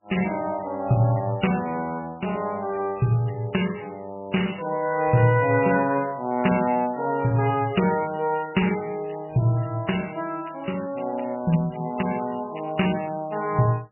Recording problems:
lossy codec; MP3, log-spectral distance 9 dB, nothing above 2.7 kHz
crackling; from 4.5 to 6 s, from 6.5 to 8.5 s and from 10 to 13 s; loose cable, SNR 24 dB

